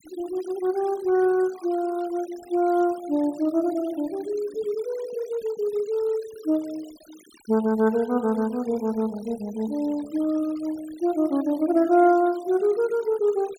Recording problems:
denoising artefacts; signal-to-artefact ratio 23 dB

